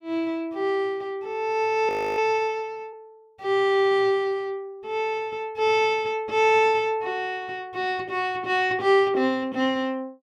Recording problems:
audio freezing; at 2 s

